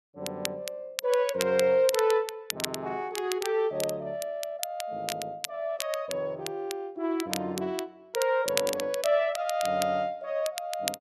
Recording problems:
crackle; vinyl, SNR 8 dB

